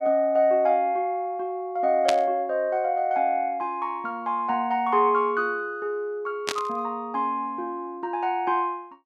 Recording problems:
static burst; at 2 s and at 6.5 s; peak +3 dB vs average level

